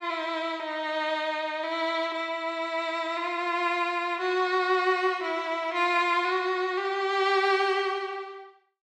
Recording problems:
none

